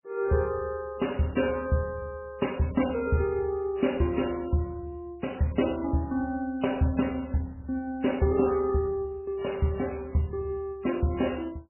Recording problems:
lossy codec; MP3, log-spectral distance 3 dB, nothing above 2.9 kHz

